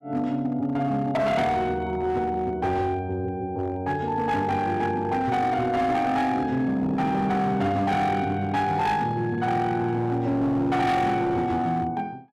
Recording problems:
distorted audio; hard clipping, signal-to-distortion ratio 10 dB

